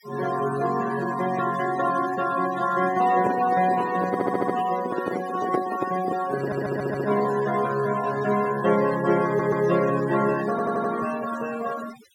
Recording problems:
noise reduction artefacts; signal-to-artefact ratio 13 dB
handling noise; from 3 to 7.5 s; peak +2 dB vs average level
stutter; 4 times, first at 4 s

